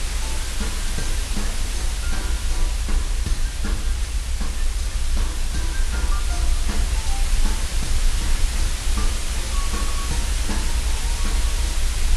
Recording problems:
lossy compression; AAC, log-spectral distance 6 dB
hiss; slope 0 dB per octave, SNR -6 dB
rumble; below 58 Hz, strongest tone 24 Hz, SNR -9 dB

